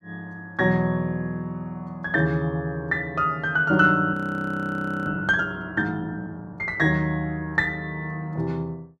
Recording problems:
audio freezing; at 4 s for 1 s

